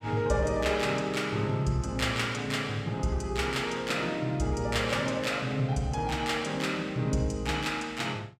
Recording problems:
none

